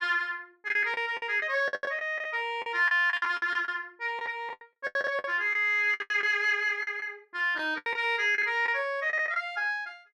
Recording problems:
packet loss; 15% of the sound replaced, filled with the last packet

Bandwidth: 13 kHz